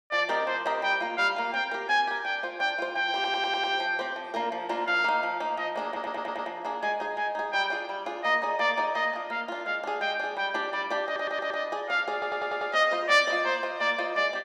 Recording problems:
audio stuttering; 4 times, first at 3 s

